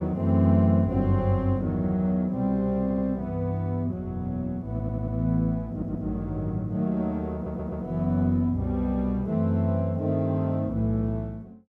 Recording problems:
stutter; 4 times, first at 3 s

